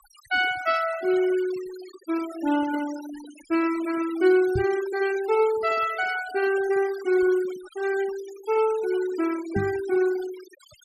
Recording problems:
noise reduction artefacts; signal-to-artefact ratio 17 dB
microphone thump; at 4.5 s and at 9.5 s; peak +1 dB vs average level

